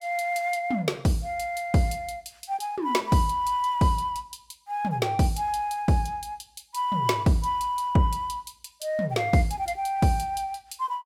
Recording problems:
none

